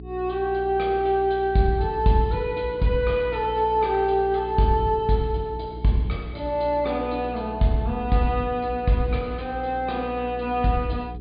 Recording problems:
treble cut off; nothing above 4.8 kHz
electrical hum; 60 Hz, harmonics up to 420 Hz, SNR 15 dB

